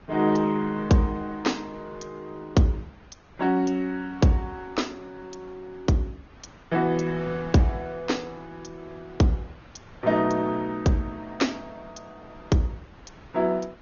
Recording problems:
treble missing; nothing above 6.7 kHz
lossy codec; Opus, log-spectral distance 3 dB
wind on the microphone; below 1.1 kHz, SNR 24 dB

